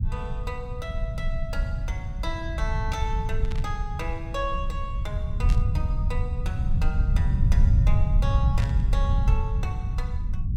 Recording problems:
rumble; below 96 Hz, SNR -9 dB
burst of static; at 3.5 s, at 5.5 s and at 8.5 s; peak -1 dB vs average level

